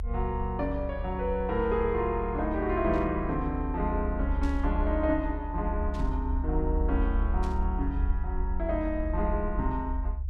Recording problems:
low-frequency rumble; below 68 Hz, strongest tone 40 Hz, SNR 2 dB
static burst; 4 times, first at 3 s; peak -12 dB vs average level

